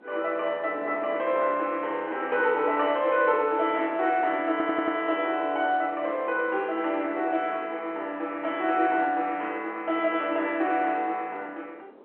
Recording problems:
phone line; 300 Hz to 3.4 kHz, G.711
wind on the microphone; below 670 Hz, SNR 23 dB
stutter; at 4.5 s

